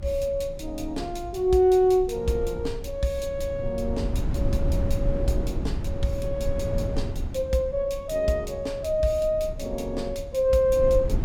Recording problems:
rumble; below 110 Hz, SNR 7 dB

